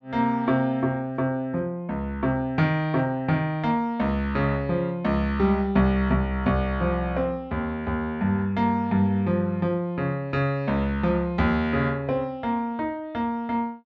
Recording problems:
none

